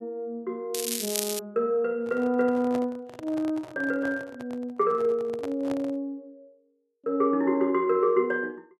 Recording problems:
crackling; at 0.5 s; loose cable, SNR 3 dB
handling noise; from 2 to 6 s; peak -6 dB vs average level

